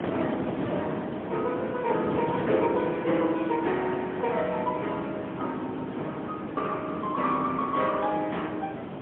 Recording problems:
phone line; 190 Hz to 3.3 kHz, AMR-NB, then MP3
wind noise; below 680 Hz, SNR 6 dB

